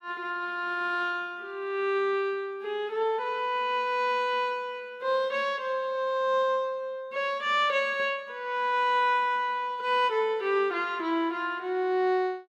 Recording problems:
none

